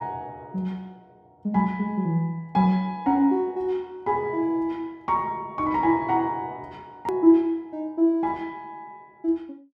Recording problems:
hard cut with a click; at 7 s

